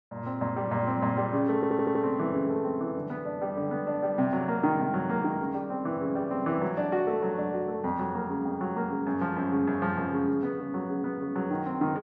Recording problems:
audio stuttering; at 1.5 s

